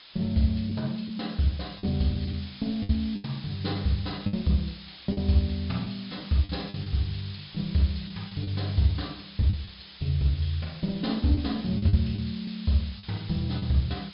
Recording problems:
treble missing; nothing above 5.5 kHz
hiss; SNR 16 dB
packet loss; 6% of the sound replaced, filled with the last packet

